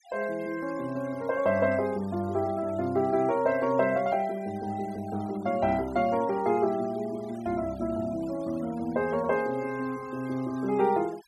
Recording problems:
noise reduction artefacts; signal-to-artefact ratio 23 dB

